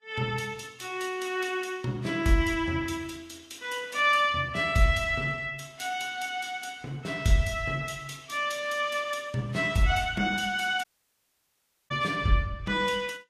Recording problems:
lossy compression; Vorbis, log-spectral distance 4 dB, nothing above 13.5 kHz
audio cutting out; at 11 s for 1 s

